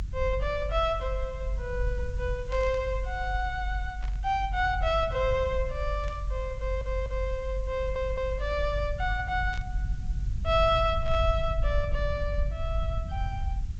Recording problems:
treble cut off; nothing above 8 kHz
background hiss; slope 0 dB per octave, SNR 28 dB
low-frequency rumble; below 66 Hz, strongest tone 48 Hz, SNR 3 dB
static burst; 5 times, first at 2.5 s; peak -12 dB vs average level
audio stuttering; at 6.5 s and at 7.5 s

